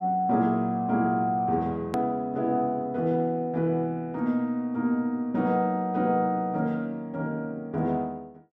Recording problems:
hard cut with a click; at 2 s

